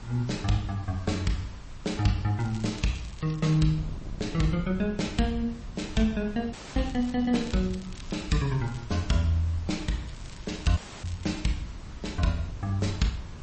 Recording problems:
codec artefacts; MP3, log-spectral distance 4 dB, nothing above 8.2 kHz
background hiss; SNR 23 dB
wind noise; below 130 Hz, SNR 14 dB
crackle; from 2.5 to 3.5 s, from 7 to 9 s and from 10 to 11 s; loose cable, SNR 21 dB
dropout; at 6.5 s and at 11 s

